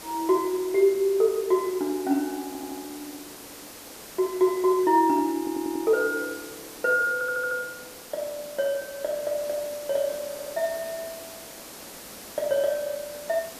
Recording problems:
background hiss; slope -3 dB per octave, SNR 15 dB
audio stuttering; 4 times, first at 2.5 s

